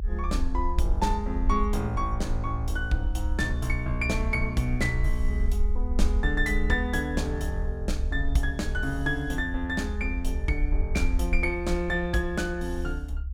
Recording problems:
low-frequency rumble; below 68 Hz, SNR 2 dB

